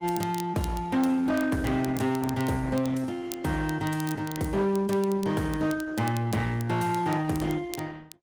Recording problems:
lossy codec; Opus, log-spectral distance 3 dB, nothing above 19 kHz
distortion; hard clipping, signal-to-distortion ratio 11 dB
crackling; vinyl, SNR 17 dB

